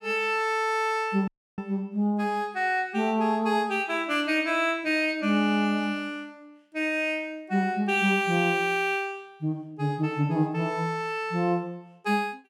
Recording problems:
dropout; at 1.5 s

